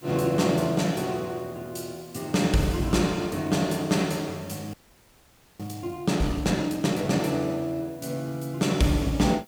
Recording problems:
background hiss; slope -3 dB per octave, SNR 26 dB
audio freezing; at 4.5 s for 1 s

